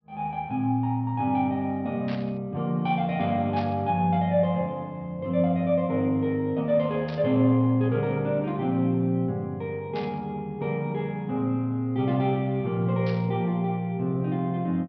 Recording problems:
treble missing; nothing above 5.5 kHz
burst of static; 5 times, first at 2 s; peak -11 dB vs average level

